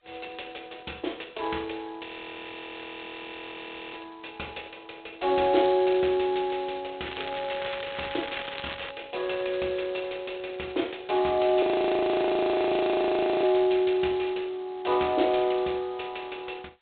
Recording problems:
telephone audio; 280 Hz to 3.6 kHz, G.726
audio freezing; at 2 s for 2 s and at 12 s for 2 s
crackling; from 7 to 9 s; loose cable, SNR 11 dB

